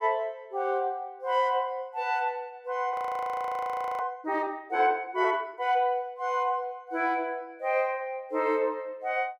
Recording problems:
audio freezing; at 3 s for 1 s

